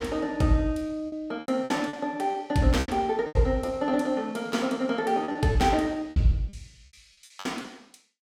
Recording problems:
packet loss; 11% of the sound replaced, filled with repeated pitch periods

